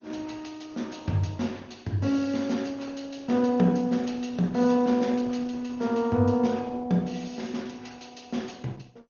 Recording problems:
codec artefacts; MP2, then Opus, log-spectral distance 5 dB, nothing above 6.5 kHz

